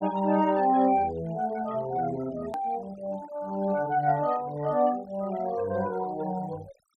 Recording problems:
denoising artefacts; signal-to-artefact ratio 22 dB
edit click; at 2.5 s

